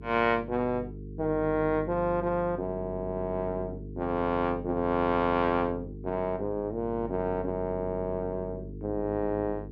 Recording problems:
hum; 50 Hz, harmonics up to 450 Hz, SNR 11 dB

